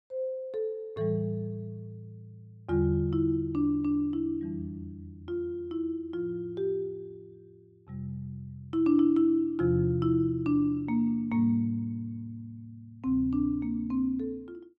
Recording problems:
none

